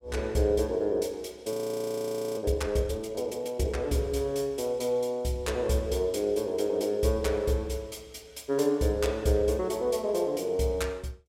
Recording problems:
frozen audio; at 1.5 s for 1 s

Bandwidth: 16.5 kHz